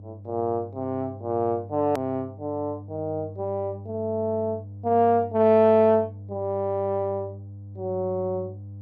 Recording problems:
electrical hum; 50 Hz, harmonics up to 500 Hz, SNR 15 dB
click at an edit; at 2 s

